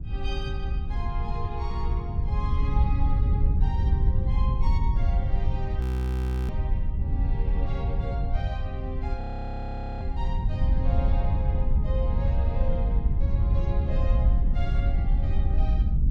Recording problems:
wind on the microphone; below 82 Hz, SNR -11 dB
audio freezing; at 6 s for 0.5 s and at 9 s for 1 s

